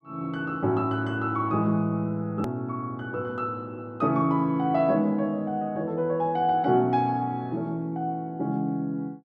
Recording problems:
click at an edit; at 2.5 s

